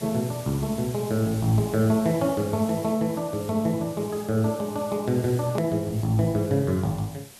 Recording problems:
hiss; SNR 17 dB
edit click; at 5.5 s

